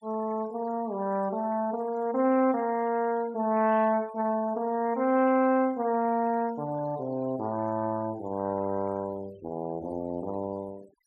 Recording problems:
noise reduction artefacts; signal-to-artefact ratio 23 dB

